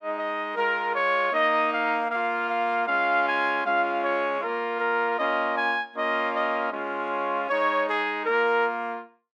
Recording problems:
none

